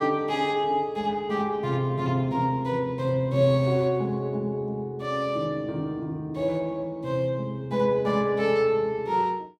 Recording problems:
none

